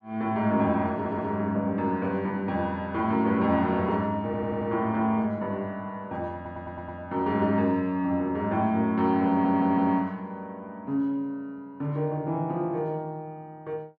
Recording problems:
stutter; 4 times, first at 1 s

